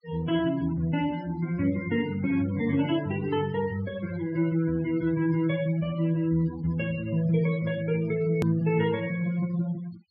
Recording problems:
treble missing; nothing above 5.5 kHz
noise reduction artefacts; signal-to-artefact ratio 18 dB
edit click; at 8.5 s

